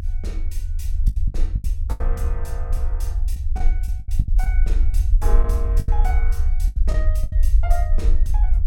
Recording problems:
low-frequency rumble; below 54 Hz, strongest tone 24 Hz, SNR -12 dB
packet loss; 8% of the sound replaced, filled with the last packet

